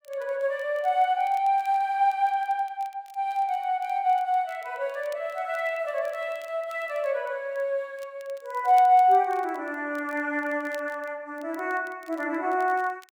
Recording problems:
crackling; vinyl, SNR 29 dB

